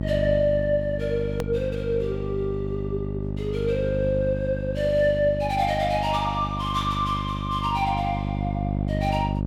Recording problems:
hum; 50 Hz, harmonics up to 650 Hz, SNR 4 dB
click at an edit; at 1.5 s

